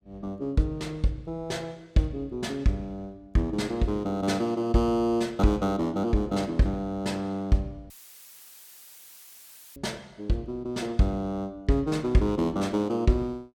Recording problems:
dropout; at 8 s for 2 s; filled with static

